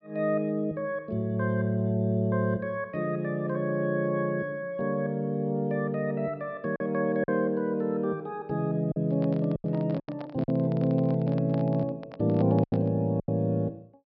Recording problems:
treble missing; nothing above 5.5 kHz
lost packets; 3% of the sound replaced, filled with silence
microphone handling noise; from 9 to 13 s; peak -10 dB vs average level

